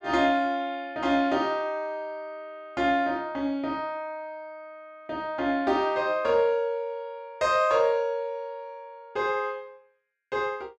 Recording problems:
none

